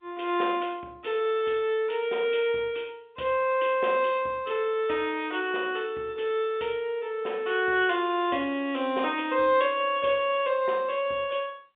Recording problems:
telephone audio; 220 Hz to 3.6 kHz, G.711

